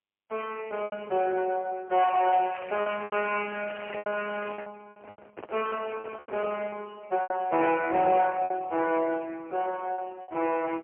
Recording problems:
phone line; 260 Hz to 3.1 kHz, AMR-NB, then MP3
distortion; hard clipping, signal-to-distortion ratio 12 dB
lost packets; 9% of the sound replaced, filled with repeated pitch periods
crackling; from 2 to 4.5 s; loose cable, SNR 15 dB
microphone handling noise; from 5 to 6.5 s; peak -9 dB vs average level

